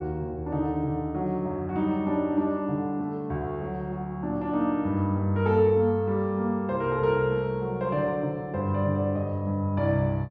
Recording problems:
treble missing; nothing above 7.3 kHz

